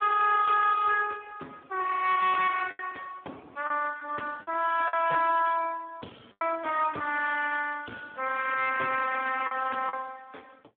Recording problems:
phone line; 220 Hz to 2.5 kHz, Speex
distorted audio; hard clipping, signal-to-distortion ratio 10 dB
packet loss; 4% of the sound replaced, filled with the last packet

